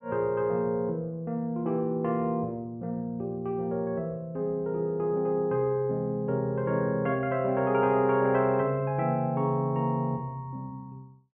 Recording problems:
low-pass filter; nothing above 3.1 kHz

